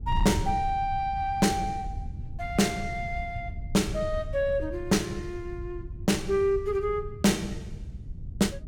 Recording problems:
distorted audio; hard clipping, signal-to-distortion ratio 12 dB
wind noise; below 98 Hz, SNR 10 dB

